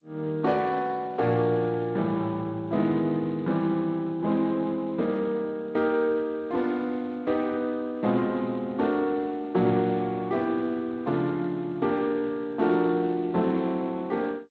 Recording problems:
codec artefacts; Speex, then G.722, log-spectral distance 2 dB

